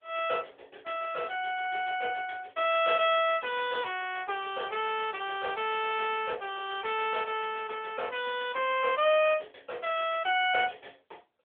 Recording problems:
telephone audio; 370 Hz to 3.5 kHz, AMR-NB

